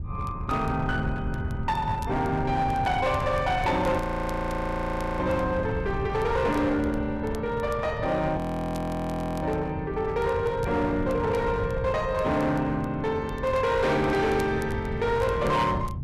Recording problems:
distorted audio; hard clipping, uneven, signal-to-distortion ratio 10 dB
wind noise; below 150 Hz, SNR 8 dB
crackling; vinyl, SNR 27 dB
frozen audio; at 4 s for 1 s and at 8.5 s for 1 s

